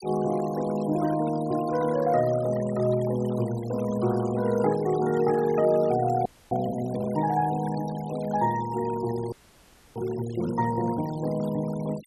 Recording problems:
denoising artefacts; signal-to-artefact ratio 18 dB
frozen audio; at 6.5 s and at 9.5 s for 0.5 s

